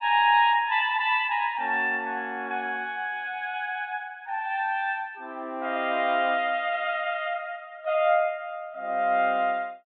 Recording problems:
low-pass filter; nothing above 4 kHz

